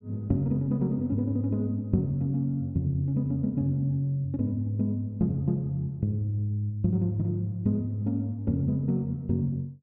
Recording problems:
none

